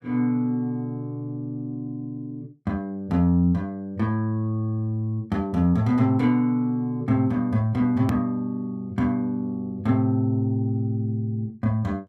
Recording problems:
click at an edit; at 8 s

